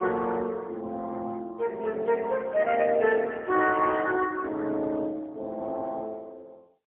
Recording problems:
phone line; 240 Hz to 3 kHz, AMR-NB, then MP3

